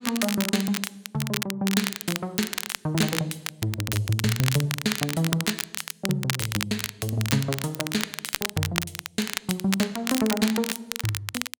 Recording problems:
crackle; vinyl, SNR 3 dB

